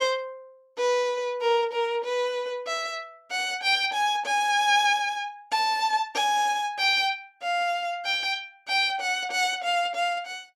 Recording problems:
none

